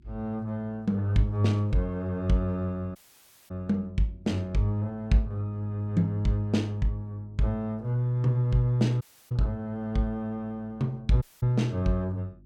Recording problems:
hum; 50 Hz, harmonics up to 350 Hz, SNR 27 dB
dropout; at 3 s for 0.5 s, at 9 s and at 11 s

